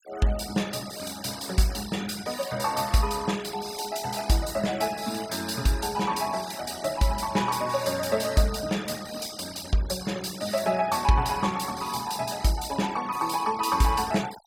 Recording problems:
denoising artefacts; signal-to-artefact ratio 16 dB

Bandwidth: 17 kHz